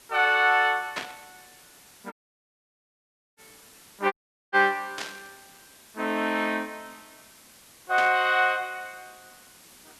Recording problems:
hiss; slope -1 dB per octave, SNR 26 dB
burst of static; at 1 s, at 5 s and at 8 s; peak -3 dB vs average level
dropout; at 2 s for 1.5 s and at 4 s

